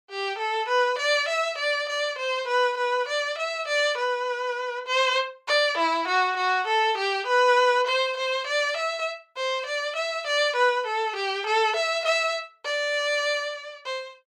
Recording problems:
none

